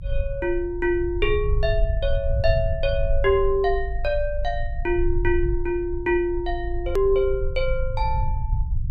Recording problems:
low-frequency rumble; below 64 Hz, strongest tone 22 Hz, SNR 4 dB
hard cut with a click; at 7 s

